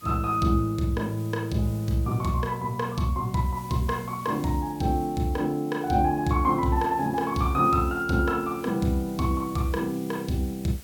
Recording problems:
hiss; SNR 22 dB

